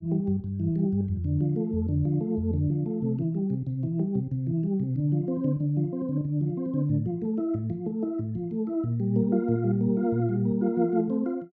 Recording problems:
none

